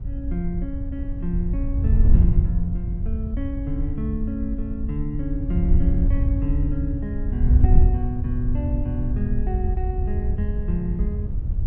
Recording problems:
wind on the microphone; below 78 Hz, SNR -5 dB

